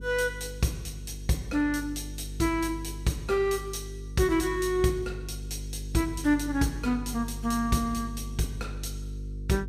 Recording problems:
hum; 50 Hz, harmonics up to 450 Hz, SNR 10 dB

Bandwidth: 15.5 kHz